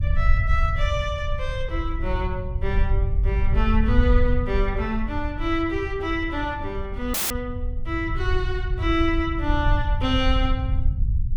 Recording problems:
rumble; below 74 Hz, SNR 0 dB
dropout; at 7 s

